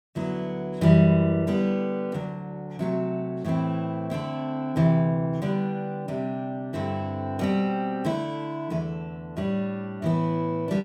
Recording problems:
none

